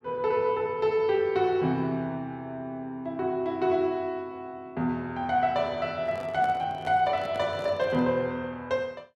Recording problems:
handling noise; from 6 to 8 s; peak -9 dB vs average level

